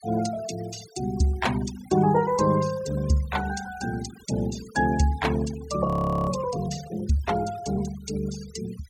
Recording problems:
denoising artefacts; signal-to-artefact ratio 15 dB
audio freezing; at 6 s

